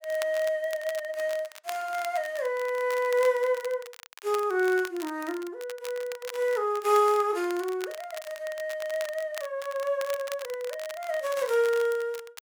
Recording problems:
crackling; vinyl, SNR 16 dB

